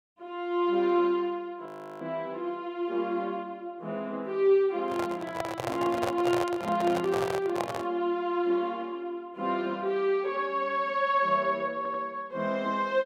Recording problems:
frozen audio; at 1.5 s
handling noise; from 5 to 8 s; peak +1 dB vs average level
audio stuttering; at 12 s

